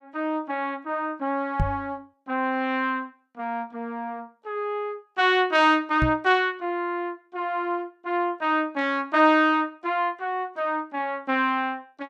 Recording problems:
knock on the microphone; at 1.5 s and at 6 s; peak +3 dB vs average level

